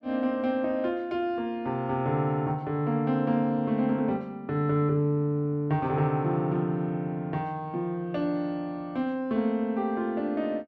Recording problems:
none

